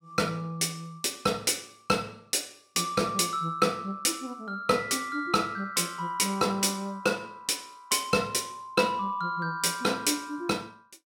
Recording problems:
none

